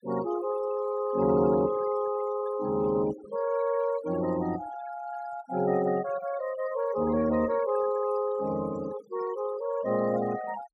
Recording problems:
denoising artefacts; signal-to-artefact ratio 16 dB

